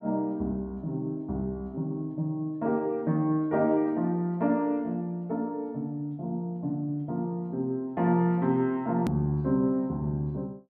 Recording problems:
edit click; at 9 s

